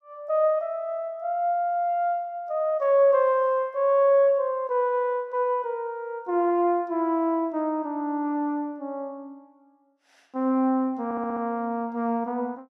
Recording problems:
stutter; at 11 s

